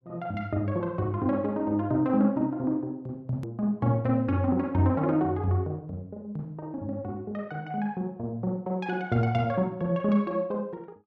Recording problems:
edit click; at 3.5 s

